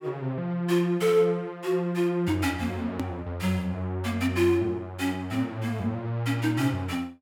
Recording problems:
edit click; at 3 s

